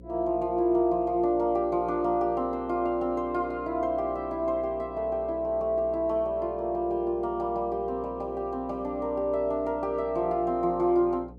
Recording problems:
hum; 60 Hz, harmonics up to 540 Hz, SNR 20 dB

